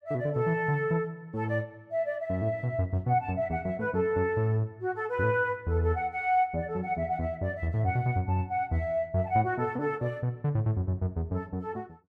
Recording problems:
none

